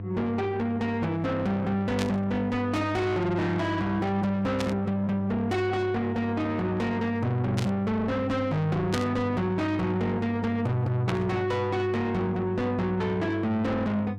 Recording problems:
distorted audio; soft clipping, signal-to-distortion ratio 6 dB
electrical hum; 50 Hz, harmonics up to 700 Hz, SNR 8 dB
static burst; 5 times, first at 2 s; peak -1 dB vs average level

